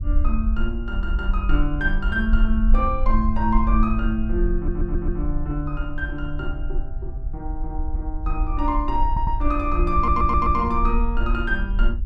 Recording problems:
low-frequency rumble; below 50 Hz, SNR 1 dB
stutter; at 4.5 s, at 9 s and at 10 s

